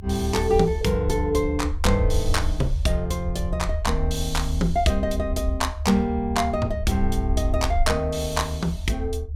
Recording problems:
rumble; below 76 Hz, SNR 4 dB

